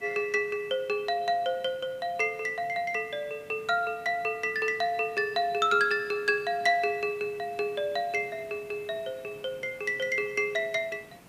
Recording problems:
hiss; slope -5 dB per octave, SNR 24 dB

